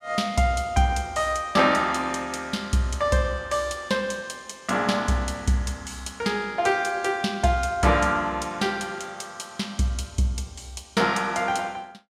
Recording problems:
none

